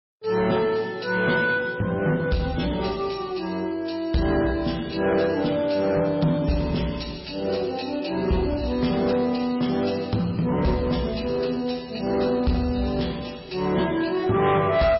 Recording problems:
codec artefacts; MP3, log-spectral distance 6 dB, nothing above 5.5 kHz
distorted audio; soft clipping, signal-to-distortion ratio 11 dB

